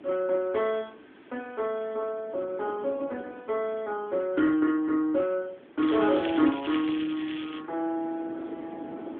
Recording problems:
telephone audio; 240 Hz to 2.5 kHz, AMR-NB
background hiss; SNR 30 dB
wind on the microphone; below 480 Hz, SNR 19 dB
crackling; from 6 to 7.5 s; loose cable, SNR 12 dB

